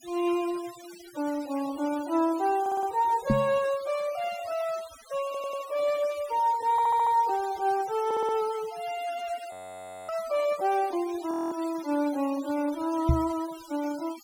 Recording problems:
denoising artefacts; signal-to-artefact ratio 18 dB
audio stuttering; 4 times, first at 2.5 s
microphone thump; at 3.5 s and at 13 s; peak +8 dB vs average level
audio freezing; at 9.5 s for 0.5 s and at 11 s

